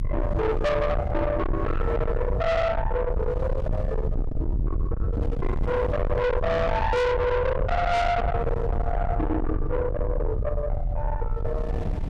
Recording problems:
distortion; soft clipping, signal-to-distortion ratio 6 dB
low-frequency rumble; below 490 Hz, SNR 2 dB
wind noise; below 410 Hz, SNR 12 dB

